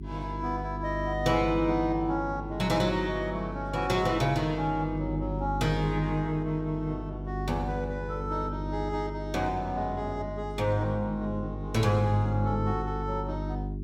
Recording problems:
hum; 50 Hz, harmonics up to 400 Hz, SNR 6 dB

